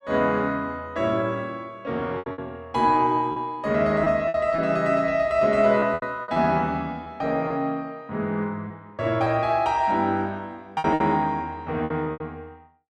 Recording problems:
packet loss; 7% of the sound replaced, filled with repeated pitch periods

